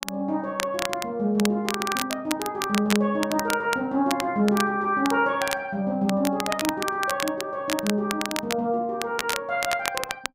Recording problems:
crackling; vinyl, SNR 7 dB

